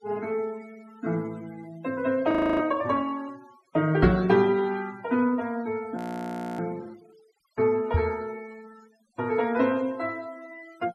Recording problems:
noise reduction artefacts; signal-to-artefact ratio 24 dB
frozen audio; at 2.5 s and at 6 s for 0.5 s
knock on the microphone; at 4 s and at 8 s; peak +6 dB vs average level

